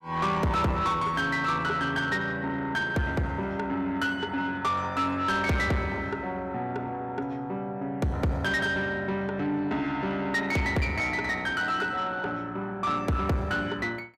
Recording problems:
distortion; soft clipping, signal-to-distortion ratio 10 dB

